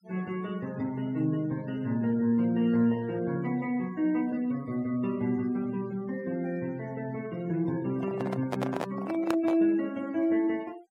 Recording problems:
noise reduction artefacts; signal-to-artefact ratio 22 dB
handling noise; from 8 to 9.5 s; peak +1 dB vs average level

